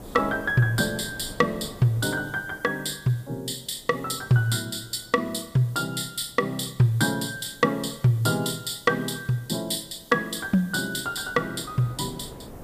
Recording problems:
hiss; slope +6 dB per octave, SNR 27 dB
wind noise; below 530 Hz, SNR 22 dB

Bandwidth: 15 kHz